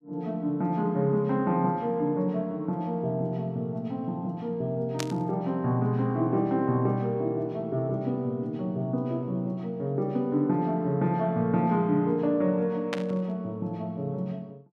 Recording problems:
burst of static; at 5 s and at 13 s; peak 0 dB vs average level

